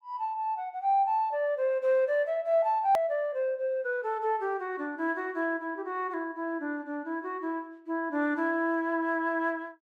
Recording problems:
edit click; at 3 s

